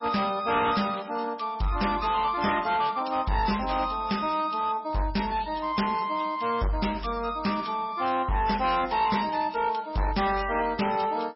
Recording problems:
lossy codec; MP3, log-spectral distance 6 dB, nothing above 5.5 kHz
distorted audio; hard clipping, signal-to-distortion ratio 10 dB

